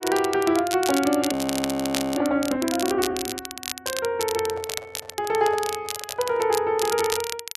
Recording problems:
crackling; vinyl, SNR 7 dB
audio freezing; at 1.5 s for 1 s
microphone handling noise; from 4.5 to 6.5 s; peak -10 dB vs average level

